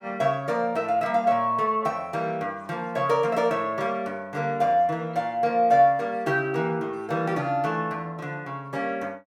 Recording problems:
none

